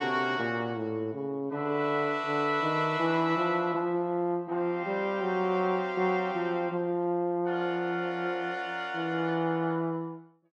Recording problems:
none

